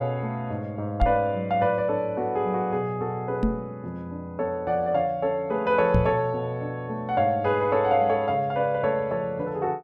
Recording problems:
microphone bump; at 1 s, at 3.5 s and at 6 s; peak +5 dB vs average level

